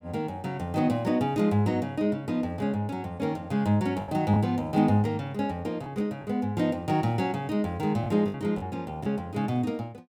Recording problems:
lost packets; 3% of the sound replaced, filled with the last packet

